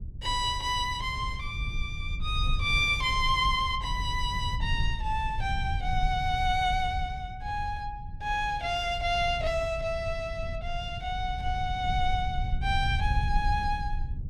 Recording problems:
rumble; below 84 Hz, SNR 6 dB

